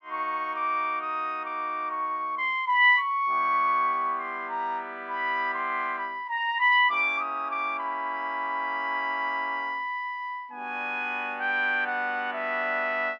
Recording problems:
none

